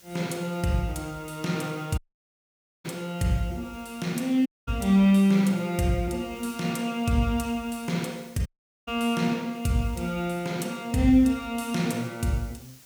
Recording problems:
hiss; SNR 25 dB
dropout; at 2 s for 1 s, at 4.5 s and at 8.5 s

